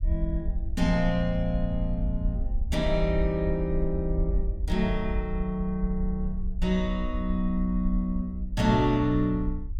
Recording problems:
rumble; below 60 Hz, SNR 4 dB

